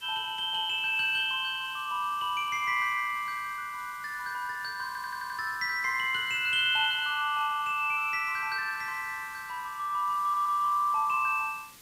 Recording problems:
background hiss; SNR 22 dB
stutter; at 5 s and at 10 s

